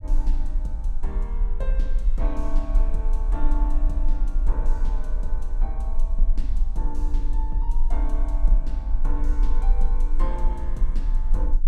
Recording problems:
rumble; below 38 Hz, strongest tone 20 Hz, SNR -11 dB

